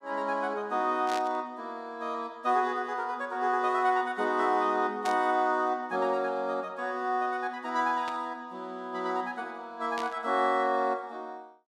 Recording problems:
static burst; 4 times, first at 1 s; peak -5 dB vs average level

